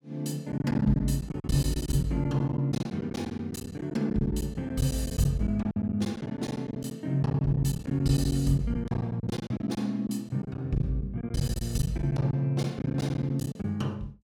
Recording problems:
packet loss; 15% of the sound replaced, filled with silence

